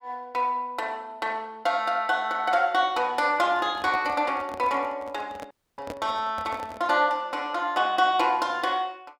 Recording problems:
handling noise; from 3.5 to 7 s; peak -6 dB vs average level
dropout; at 5.5 s

